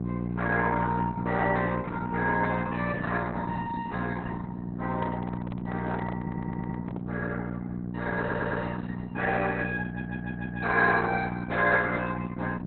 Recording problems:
codec artefacts; Opus, log-spectral distance 4 dB, nothing above 4.1 kHz
hum; 60 Hz, harmonics up to 780 Hz, SNR 4 dB
handling noise; from 5 to 7 s; peak -3 dB vs average level
audio stuttering; at 6 s, at 8 s and at 10 s

